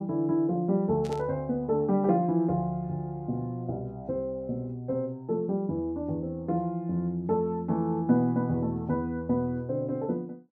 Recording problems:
static burst; at 1 s; peak -12 dB vs average level

